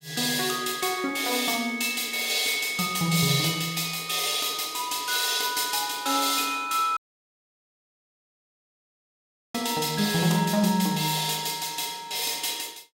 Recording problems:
dropout; at 7 s for 2.5 s

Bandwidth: 16 kHz